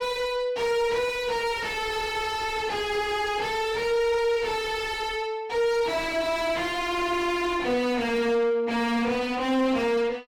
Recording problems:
distorted audio; soft clipping, signal-to-distortion ratio 5 dB

